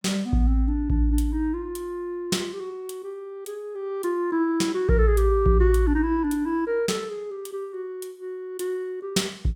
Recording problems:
none

